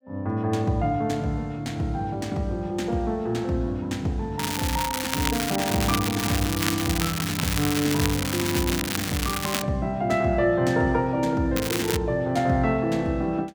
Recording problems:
crackling; from 4.5 to 9.5 s and at 12 s; loose cable, SNR 3 dB

